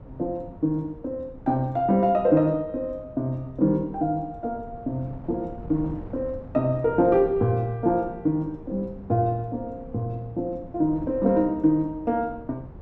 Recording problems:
wind on the microphone; below 240 Hz, SNR 18 dB

